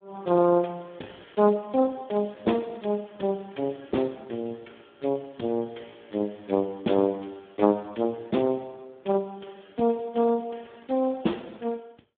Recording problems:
phone line; 130 Hz to 3.6 kHz, Speex

